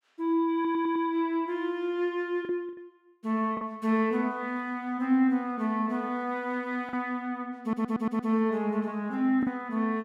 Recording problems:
packet loss; 3% of the sound replaced, filled with the last packet
audio stuttering; at 0.5 s and at 7.5 s

